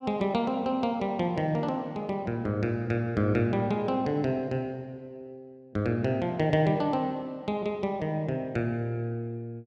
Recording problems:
none

